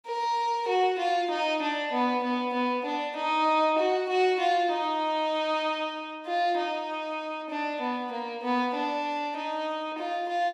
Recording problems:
none

